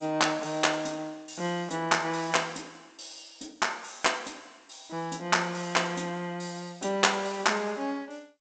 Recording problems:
codec artefacts; G.722, log-spectral distance 8 dB, nothing above 7.8 kHz

